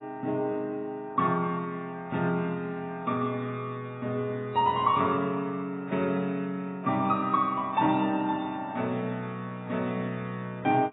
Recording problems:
codec artefacts; AAC, log-spectral distance 2 dB, nothing above 3.8 kHz

